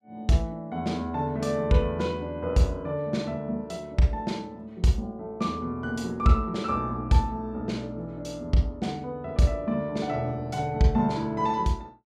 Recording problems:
none

